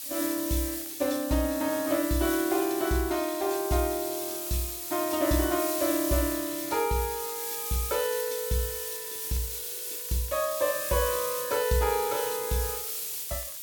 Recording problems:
hiss; SNR 4 dB
crackling; vinyl, SNR 30 dB

